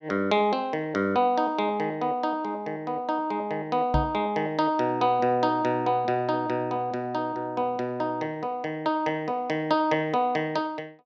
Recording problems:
microphone thump; at 4 s; peak +4 dB vs average level

